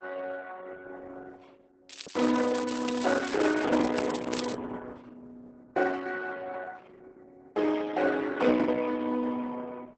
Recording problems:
codec artefacts; Opus, then Opus, log-spectral distance 6 dB, nothing above 8 kHz
lost packets; 6% of the sound replaced, filled with the last packet
crackling; from 2 to 4.5 s; loose cable, SNR 14 dB

